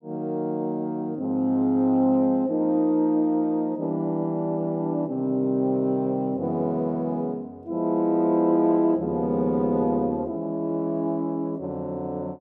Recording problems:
none

